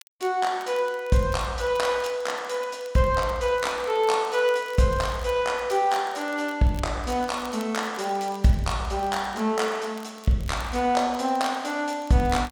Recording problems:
crackling; vinyl, SNR 24 dB

